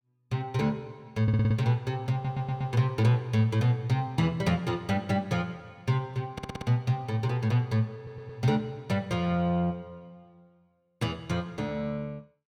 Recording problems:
stutter; 4 times, first at 1 s

